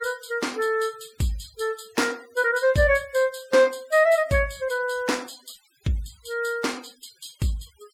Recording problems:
denoising artefacts; signal-to-artefact ratio 25 dB

